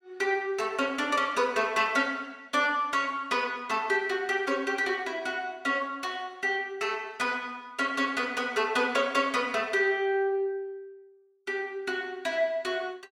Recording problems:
none

